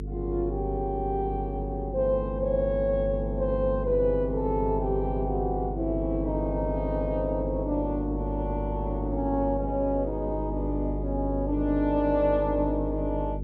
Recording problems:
electrical hum; 50 Hz, harmonics up to 450 Hz, SNR 5 dB

